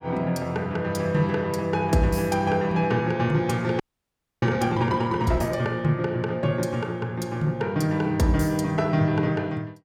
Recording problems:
audio freezing; at 4 s for 0.5 s

